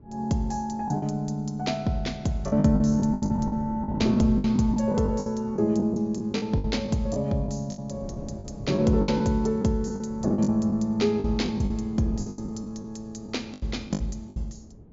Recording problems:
treble cut off; nothing above 7.3 kHz
wind on the microphone; below 250 Hz, SNR 16 dB
packet loss; 13% of the sound replaced, filled with the last packet

